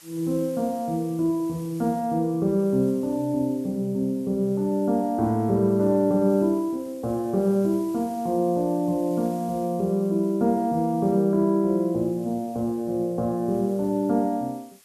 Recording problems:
background hiss; slope +1 dB per octave, SNR 26 dB

